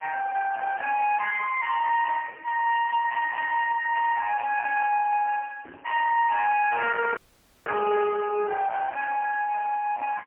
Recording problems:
phone line; 300 Hz to 2.5 kHz, AMR-NB, then MP3
distortion; soft clipping, signal-to-distortion ratio 6 dB
audio cutting out; at 7 s

